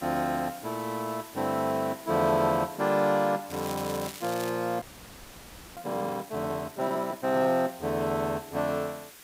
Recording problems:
hiss; slope -1 dB per octave, SNR 18 dB
crackle; from 3.5 to 4.5 s; loose cable, SNR 13 dB
frozen audio; at 5 s for 1 s

